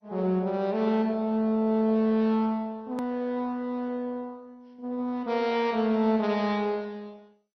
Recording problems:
codec artefacts; MP2, log-spectral distance 2 dB, nothing above 13.1 kHz
edit click; at 3 s

